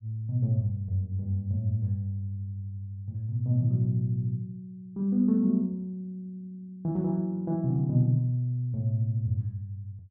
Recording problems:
none

